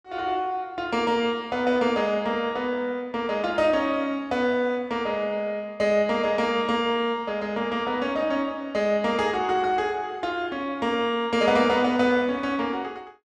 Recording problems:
none

